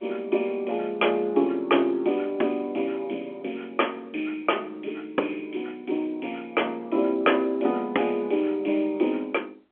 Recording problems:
phone line; 260 Hz to 3.6 kHz, G.711

